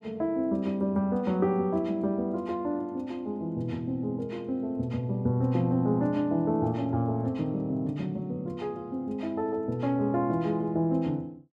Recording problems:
none

